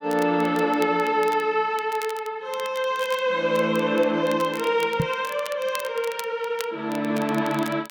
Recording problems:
crackling; vinyl, SNR 17 dB
microphone bump; at 5 s; peak +3 dB vs average level

